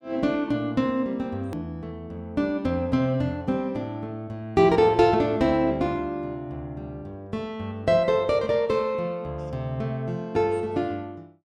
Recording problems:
hard cut with a click; at 1.5 s

